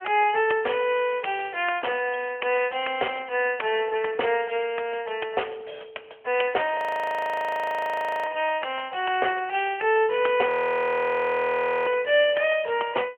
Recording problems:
telephone audio; 340 Hz to 3.2 kHz, AMR-NB
audio freezing; at 7 s for 1.5 s and at 10 s for 1.5 s

